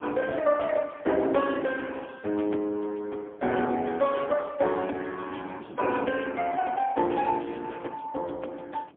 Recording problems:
telephone audio; 260 Hz to 3.3 kHz, AMR-NB, then MP3
wind on the microphone; below 440 Hz, SNR 19 dB

